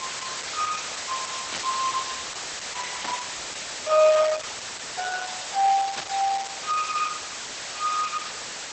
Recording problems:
lossy compression; Opus, log-spectral distance 22 dB, nothing above 8 kHz
hiss; SNR 6 dB
static burst; at 1.5 s, at 3 s and at 6 s; peak -1 dB vs average level

